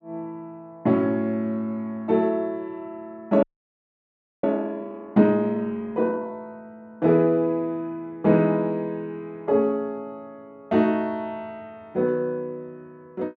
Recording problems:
audio freezing; at 3.5 s for 1 s

